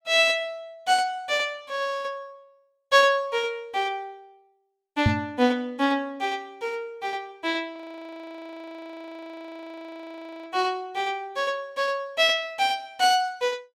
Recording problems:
microphone thump; at 5 s; peak +7 dB vs average level
frozen audio; at 8 s for 2.5 s

